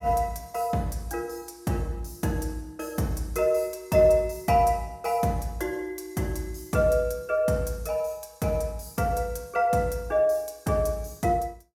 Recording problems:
none

